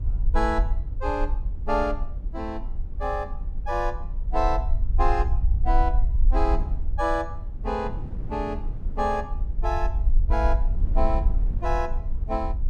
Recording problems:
low-frequency rumble; below 50 Hz, SNR -1 dB
wind on the microphone; below 200 Hz, SNR 13 dB

